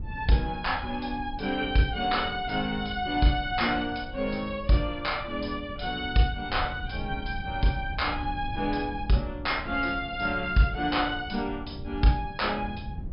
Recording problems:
low-pass filter; nothing above 5.5 kHz
low-frequency rumble; below 110 Hz, SNR 12 dB

